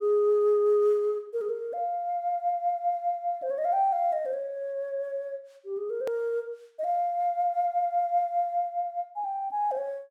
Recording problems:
click at an edit; at 6 s

